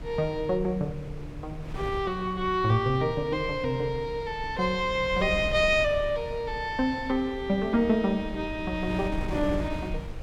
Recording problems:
wind on the microphone; below 160 Hz, SNR 12 dB

